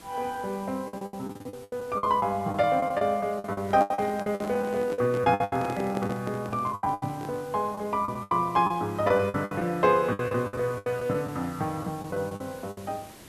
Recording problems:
hiss; slope -4 dB per octave, SNR 21 dB
packet loss; 16% of the sound replaced, filled with the last packet
handling noise; from 3.5 to 7.5 s; peak -3 dB vs average level

